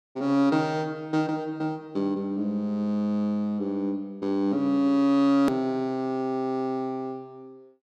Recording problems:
click at an edit; at 5.5 s

